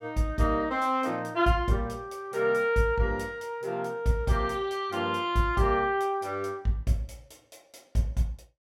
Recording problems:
none

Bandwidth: 16.5 kHz